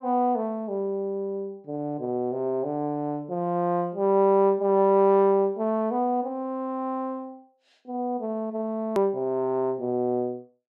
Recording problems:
hard cut with a click; at 9 s

